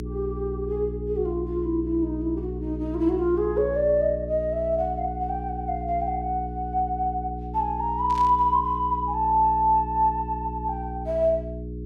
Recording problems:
hum; 60 Hz, harmonics up to 420 Hz, SNR 9 dB
static burst; at 8 s; peak -13 dB vs average level

